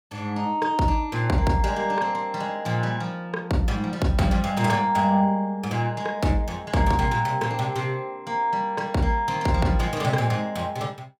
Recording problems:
none

